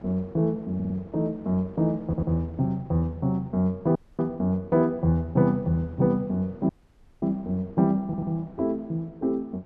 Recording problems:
wind on the microphone; below 620 Hz, SNR 25 dB
stutter; at 1 s, at 2 s and at 8 s
audio cutting out; at 4 s and at 6.5 s for 0.5 s

